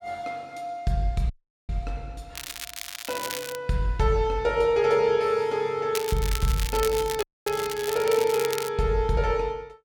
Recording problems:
audio cutting out; at 1.5 s and at 7 s
crackle; from 2.5 to 3.5 s and from 6 to 8.5 s; loose cable, SNR 9 dB

